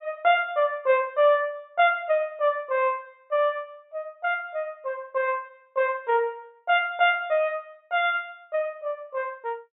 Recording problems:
low-pass filter; nothing above 4 kHz

